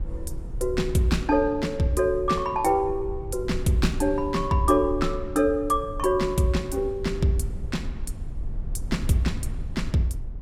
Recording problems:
rumble; below 76 Hz, SNR 11 dB

